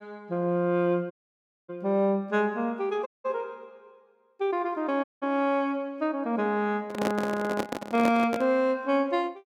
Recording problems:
dropout; at 1 s for 0.5 s, at 3 s and at 5 s
handling noise; from 7 to 8.5 s; peak +2 dB vs average level

